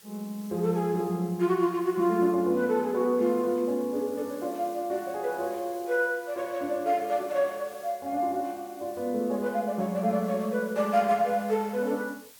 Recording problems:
background hiss; slope +1 dB per octave, SNR 22 dB

